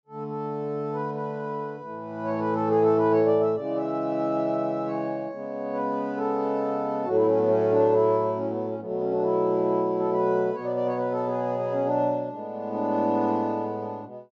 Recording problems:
treble cut off; nothing above 8 kHz

